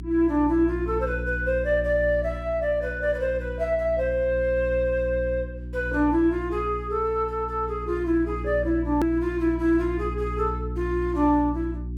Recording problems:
hum; 60 Hz, harmonics up to 360 Hz, SNR 9 dB
hard cut with a click; at 9 s

